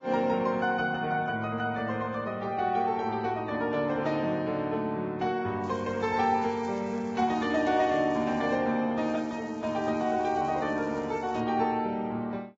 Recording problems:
lossy compression; Vorbis, log-spectral distance 3 dB, nothing above 7.3 kHz
crackle; from 5.5 to 8.5 s and from 9 to 11 s; loose cable, SNR 27 dB

